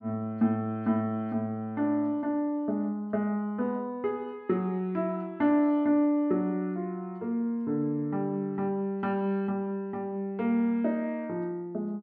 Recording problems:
none

